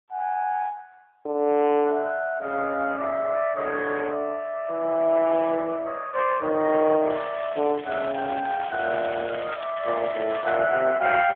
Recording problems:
telephone audio; 280 Hz to 3.5 kHz, AMR-NB
crackle; from 7 to 11 s; loose cable, SNR 16 dB

